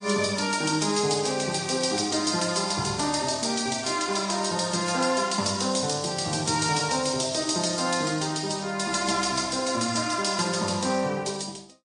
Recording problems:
lossy codec; MP3, log-spectral distance 8 dB, nothing above 9.2 kHz

